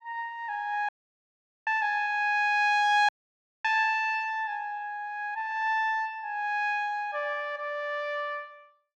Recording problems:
audio cutting out; at 1 s for 1 s and at 3 s for 0.5 s

